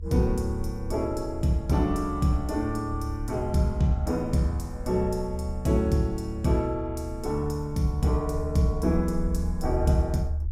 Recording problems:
low-frequency rumble; below 76 Hz, SNR 8 dB

